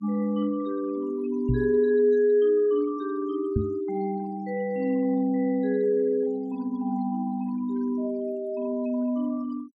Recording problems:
noise reduction artefacts; signal-to-artefact ratio 25 dB
microphone bump; at 1.5 s and at 3.5 s; peak +4 dB vs average level

